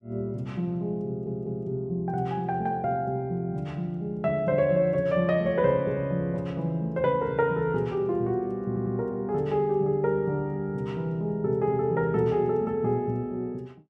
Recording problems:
stutter; at 1 s and at 8.5 s

